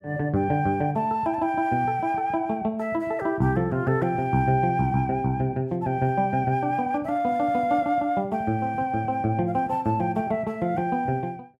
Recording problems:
none

